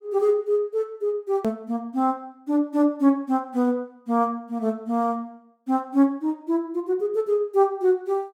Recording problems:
hard cut with a click; at 1.5 s

